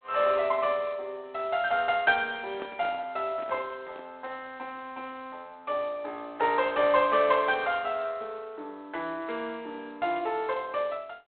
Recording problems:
telephone audio; 320 Hz to 3.6 kHz, G.726
microphone handling noise; from 2.5 to 4 s; peak -9 dB vs average level

